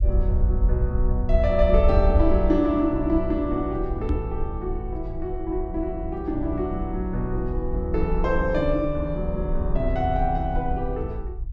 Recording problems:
rumble; below 66 Hz, SNR 3 dB
microphone bump; at 4 s; peak +3 dB vs average level

